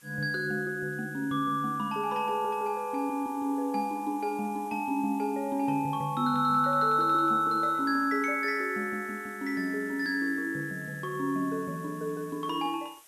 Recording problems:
hiss; SNR 24 dB

